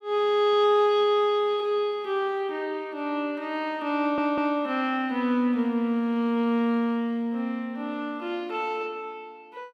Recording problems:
stutter; at 4 s

